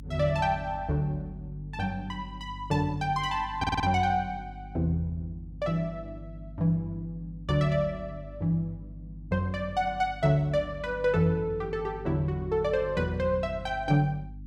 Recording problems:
hum; 50 Hz, harmonics up to 300 Hz, SNR 15 dB
audio stuttering; at 3.5 s

